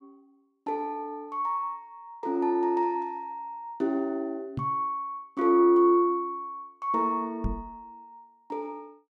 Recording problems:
microphone thump; at 4.5 s and at 7.5 s; peak 0 dB vs average level

